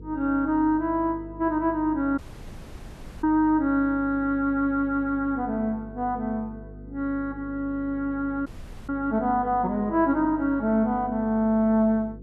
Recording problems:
treble missing; nothing above 4.9 kHz
hum; 50 Hz, harmonics up to 500 Hz, SNR 18 dB
audio cutting out; at 2 s for 1 s and at 8.5 s

